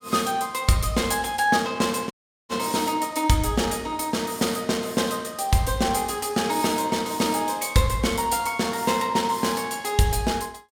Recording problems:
audio cutting out; at 2 s

